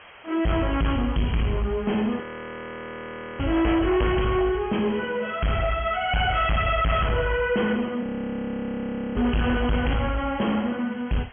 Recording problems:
treble cut off; nothing above 3.3 kHz
distorted audio; soft clipping, signal-to-distortion ratio 7 dB
hiss; SNR 22 dB
audio freezing; at 2 s for 1 s and at 8 s for 1 s

